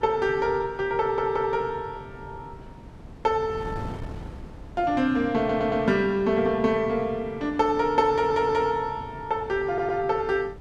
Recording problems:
wind noise; below 300 Hz, SNR 18 dB
stutter; 4 times, first at 1 s

